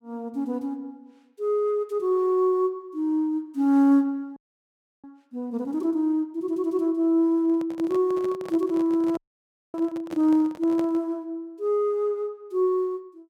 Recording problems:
frozen audio; at 4.5 s for 0.5 s and at 9 s for 0.5 s
handling noise; from 7.5 to 11 s; peak -9 dB vs average level

